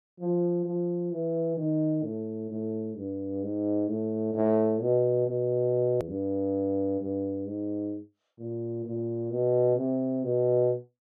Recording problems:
click at an edit; at 6 s

